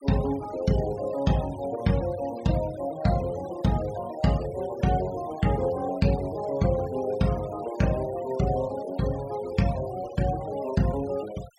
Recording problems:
denoising artefacts; signal-to-artefact ratio 19 dB

